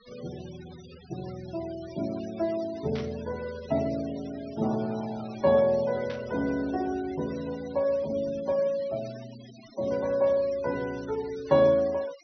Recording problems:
treble cut off; nothing above 6 kHz
denoising artefacts; signal-to-artefact ratio 20 dB
static burst; at 3 s and at 6 s; peak -10 dB vs average level

